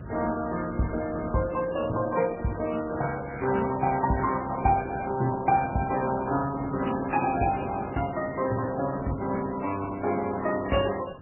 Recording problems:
lossy codec; Opus, then MP3, log-spectral distance 7 dB, nothing above 2.4 kHz
background hiss; SNR 29 dB
wind on the microphone; below 290 Hz, SNR 16 dB

